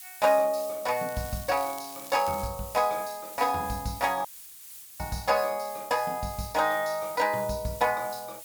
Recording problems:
hiss; slope +4 dB per octave, SNR 14 dB
crackle; from 1 to 2.5 s; loose cable, SNR 18 dB
dropout; at 4.5 s for 1 s

